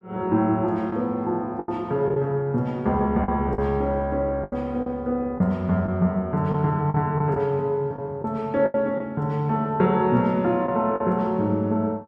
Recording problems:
lost packets; 6% of the sound replaced, filled with the last packet

